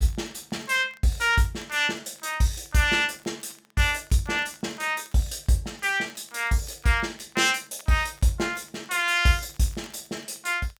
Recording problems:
crackle; vinyl, SNR 28 dB

